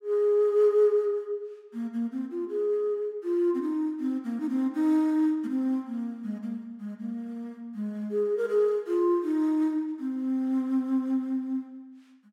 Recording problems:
none

